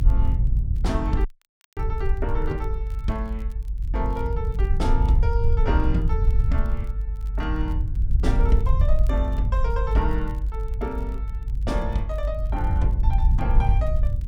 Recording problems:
rumble; below 68 Hz, SNR -6 dB
crackling; vinyl, SNR 28 dB
dropout; at 1.5 s for 0.5 s

